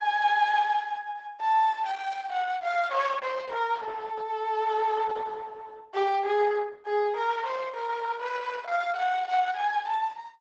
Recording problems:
lossy compression; Opus, log-spectral distance 4 dB, nothing above 7.6 kHz

